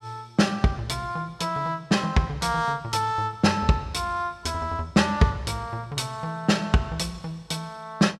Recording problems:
none

